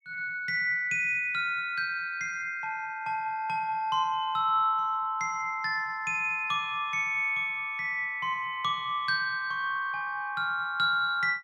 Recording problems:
none

